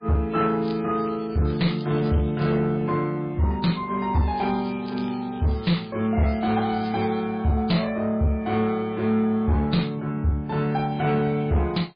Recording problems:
lossy compression; MP3, log-spectral distance 4 dB, nothing above 4.5 kHz
distorted audio; soft clipping, signal-to-distortion ratio 11 dB
crackle; from 0.5 to 2.5 s and from 4.5 to 7.5 s; loose cable, SNR 21 dB

